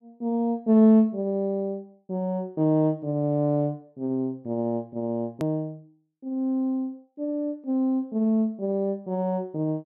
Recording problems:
edit click; at 5.5 s

